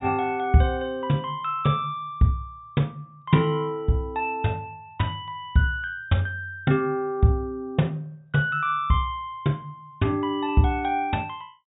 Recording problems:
low-pass filter; nothing above 4 kHz

